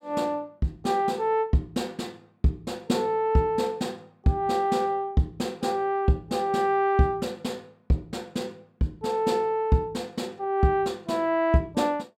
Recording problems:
none

